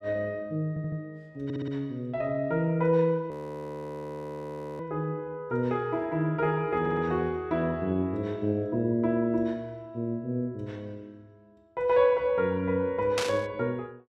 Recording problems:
stutter; at 0.5 s, at 1.5 s and at 7 s
audio freezing; at 3.5 s for 1.5 s
burst of static; at 13 s; peak +3 dB vs average level

